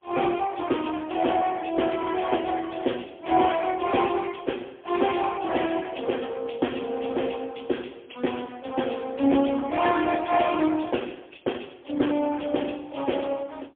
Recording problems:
telephone audio; 260 Hz to 3.4 kHz, AMR-NB, then MP3

